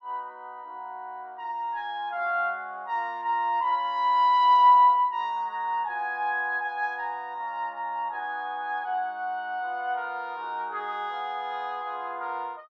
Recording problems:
none

